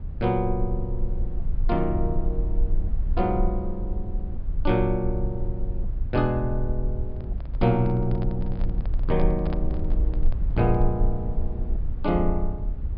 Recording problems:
treble cut off; nothing above 5.1 kHz
rumble; below 52 Hz, strongest tone 20 Hz, SNR 2 dB
handling noise; from 7 to 11 s; peak -5 dB vs average level

